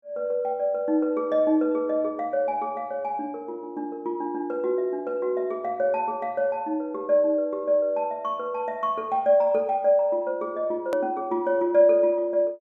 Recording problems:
edit click; at 11 s

